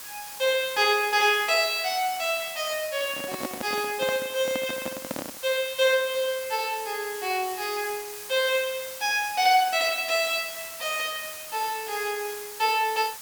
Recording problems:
background hiss; slope +1 dB per octave, SNR 11 dB
microphone handling noise; from 3 to 5.5 s; peak -2 dB vs average level

